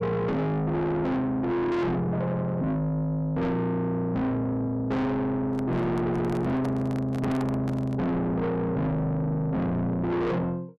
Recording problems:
distorted audio; soft clipping, signal-to-distortion ratio 6 dB
microphone handling noise; from 5.5 to 8 s; peak -3 dB vs average level

